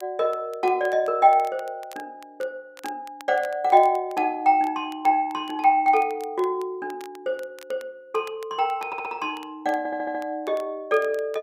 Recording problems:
crackle; vinyl, SNR 26 dB
audio stuttering; at 9 s and at 10 s

